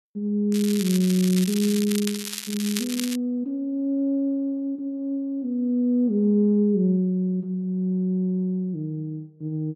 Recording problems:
crackling; from 0.5 to 3 s; loose cable, SNR 8 dB

